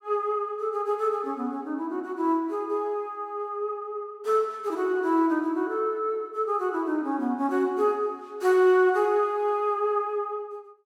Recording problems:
none

